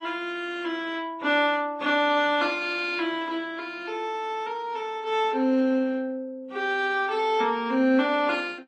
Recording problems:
lossy codec; AAC, then AAC, log-spectral distance 2 dB

